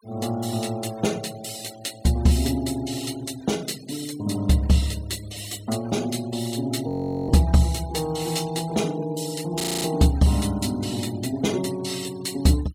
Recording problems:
denoising artefacts; signal-to-artefact ratio 19 dB
frozen audio; at 7 s and at 9.5 s

